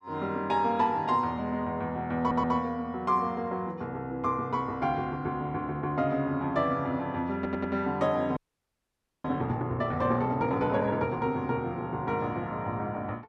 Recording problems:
stutter; at 2 s and at 7.5 s
frozen audio; at 8.5 s for 1 s

